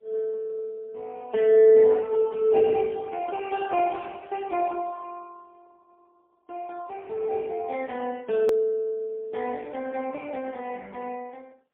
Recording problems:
phone line; 300 Hz to 3.5 kHz, AMR-NB, then MP3
edit click; at 8.5 s

